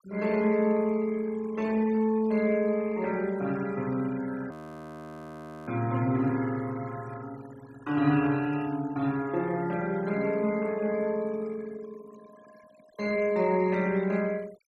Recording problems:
noise reduction artefacts; signal-to-artefact ratio 21 dB
frozen audio; at 4.5 s for 1 s

